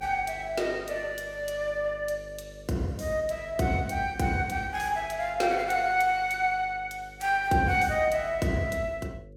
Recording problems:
mains hum; 50 Hz, harmonics up to 550 Hz, SNR 21 dB

